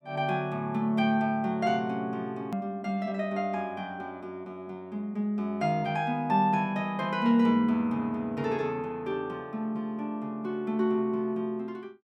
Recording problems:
hard cut with a click; at 2.5 s

